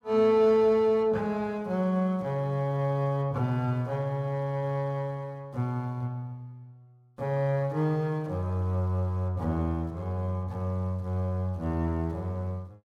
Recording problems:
none

